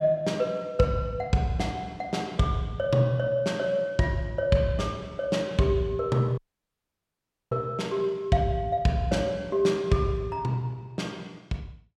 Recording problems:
dropout; at 6.5 s for 1 s

